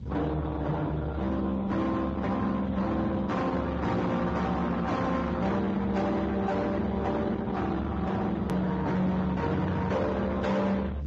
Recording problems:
codec artefacts; Speex, then Vorbis, log-spectral distance 3 dB, nothing above 7.3 kHz
distortion; soft clipping, signal-to-distortion ratio 6 dB
low-frequency rumble; below 640 Hz, SNR 6 dB
edit click; at 8.5 s

